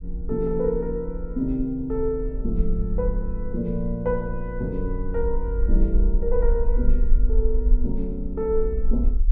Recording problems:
rumble; below 46 Hz, SNR 0 dB

